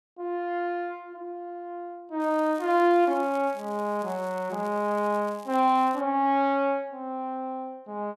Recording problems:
crackling; from 2 to 6 s; loose cable, SNR 26 dB

